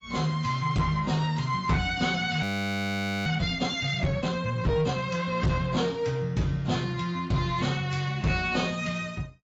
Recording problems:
lossy compression; AAC, log-spectral distance 3 dB, nothing above 18.3 kHz
distorted audio; soft clipping, signal-to-distortion ratio 12 dB
frozen audio; at 2.5 s for 1 s

